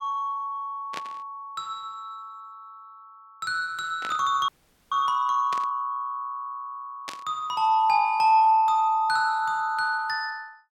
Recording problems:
static burst; 4 times, first at 1 s; peak -6 dB vs average level
audio freezing; at 4.5 s

